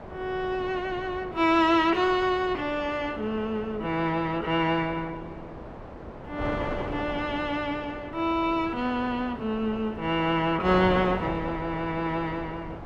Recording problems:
wind on the microphone; below 800 Hz, SNR 11 dB

